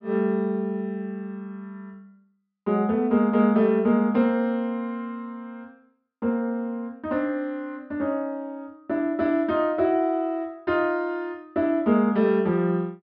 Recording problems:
treble cut off; nothing above 5.5 kHz

